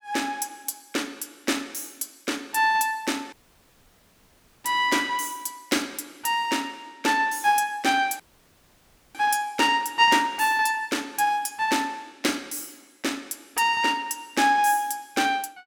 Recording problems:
audio cutting out; at 3.5 s for 1.5 s and at 8 s for 1 s

